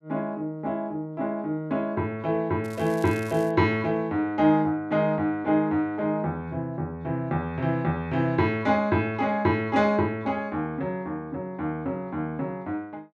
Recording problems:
crackle; at 2.5 s; loose cable, SNR 21 dB

